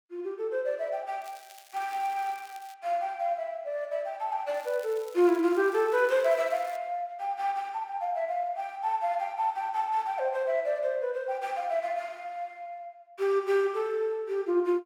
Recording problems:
crackle; from 1 to 2.5 s and from 4.5 to 7 s; loose cable, SNR 23 dB

